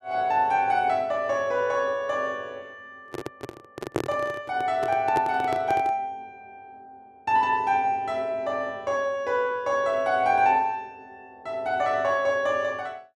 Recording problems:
handling noise; from 3 to 6 s; peak +3 dB vs average level

